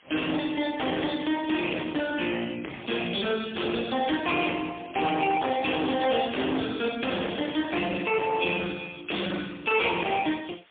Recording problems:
telephone audio; 260 Hz to 3.5 kHz, AMR-NB, then MP3
distortion; soft clipping, signal-to-distortion ratio 8 dB
hiss; SNR 27 dB

